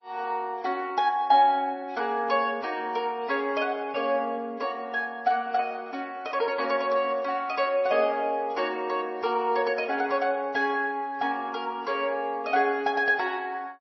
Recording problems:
lossy compression; MP3, log-spectral distance 2 dB, nothing above 5.8 kHz

